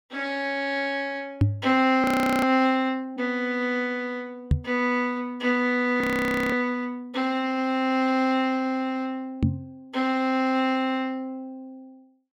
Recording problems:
microphone thump; at 1.5 s, at 4.5 s and at 9.5 s; peak +7 dB vs average level
audio freezing; at 2 s and at 6 s for 0.5 s

